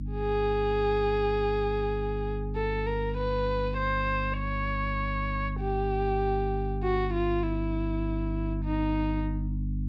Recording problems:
hum; 50 Hz, harmonics up to 300 Hz, SNR 3 dB

